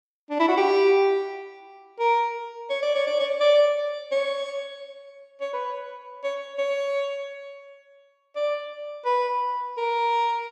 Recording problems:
none

